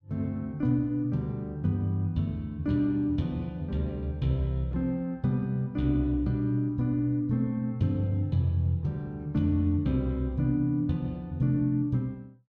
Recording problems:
none

